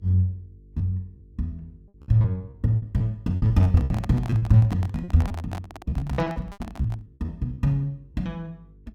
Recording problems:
hum; 50 Hz, harmonics up to 450 Hz, SNR 27 dB
lost packets; 13% of the sound replaced, filled with repeated pitch periods
handling noise; from 3.5 to 7 s; peak -8 dB vs average level

